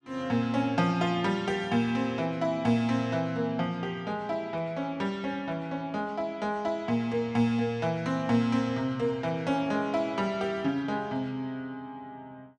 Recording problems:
none

